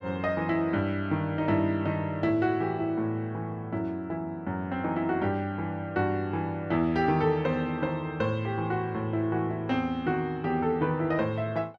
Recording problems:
none

